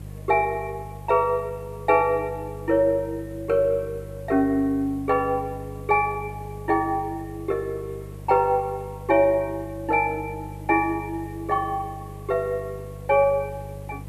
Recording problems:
hum; 50 Hz, harmonics up to 350 Hz, SNR 15 dB
background hiss; SNR 26 dB

